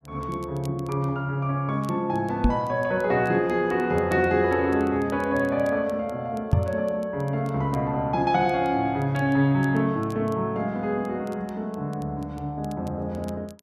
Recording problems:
crackling; vinyl, SNR 29 dB
microphone thump; at 2.5 s and at 6.5 s; peak +9 dB vs average level

